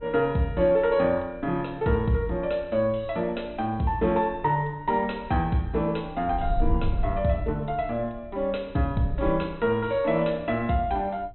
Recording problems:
low-pass filter; nothing above 4 kHz
wind noise; below 70 Hz, SNR 9 dB

